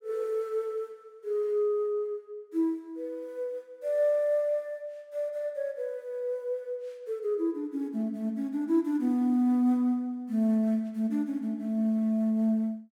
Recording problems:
none

